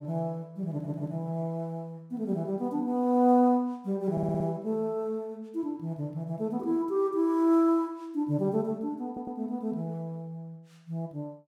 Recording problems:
audio stuttering; at 0.5 s, at 4 s and at 9 s

